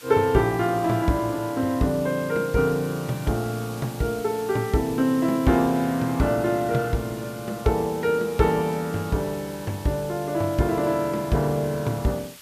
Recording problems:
hiss; slope +1 dB per octave, SNR 18 dB

